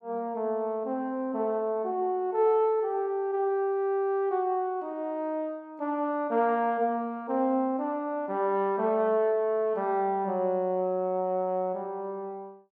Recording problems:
none

